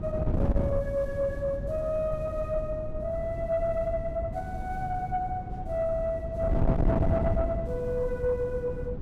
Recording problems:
distortion; soft clipping, signal-to-distortion ratio 7 dB
wind noise; below 210 Hz, SNR 2 dB

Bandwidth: 16 kHz